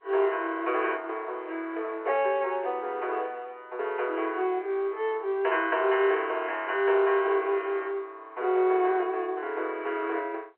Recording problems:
telephone audio; 340 Hz to 3.1 kHz, G.711

